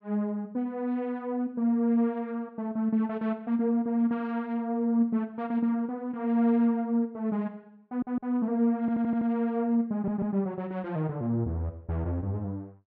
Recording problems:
audio stuttering; at 8 s, at 9 s and at 10 s

